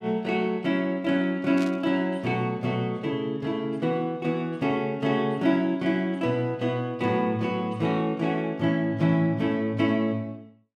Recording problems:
static burst; at 1.5 s; peak -10 dB vs average level

